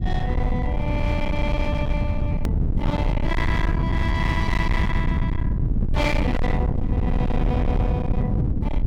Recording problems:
distortion; hard clipping, uneven, signal-to-distortion ratio 7 dB
low-frequency rumble; below 150 Hz, SNR -4 dB
edit click; at 2.5 s

